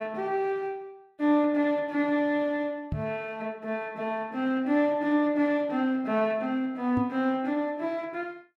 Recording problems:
microphone thump; at 3 s and at 7 s; peak 0 dB vs average level

